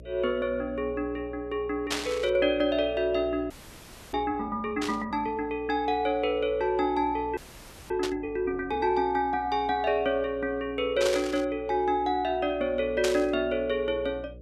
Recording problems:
hum; 60 Hz, harmonics up to 600 Hz, SNR 20 dB
burst of static; 5 times, first at 2 s; peak +3 dB vs average level
frozen audio; at 3.5 s for 0.5 s and at 7.5 s for 0.5 s

